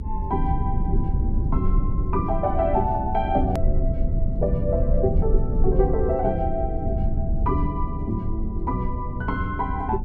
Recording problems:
rumble; below 82 Hz, SNR 0 dB
hard cut with a click; at 3.5 s

